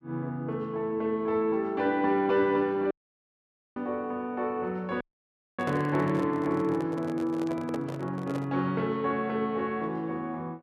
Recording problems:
dropout; at 3 s for 1 s and at 5 s for 0.5 s
handling noise; from 5.5 to 8.5 s; peak -2 dB vs average level

